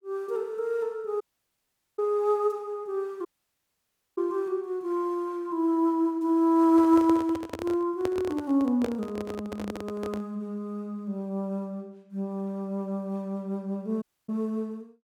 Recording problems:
audio cutting out; at 1 s for 1 s, at 3.5 s for 1 s and at 14 s
microphone handling noise; from 6.5 to 10 s; peak -1 dB vs average level

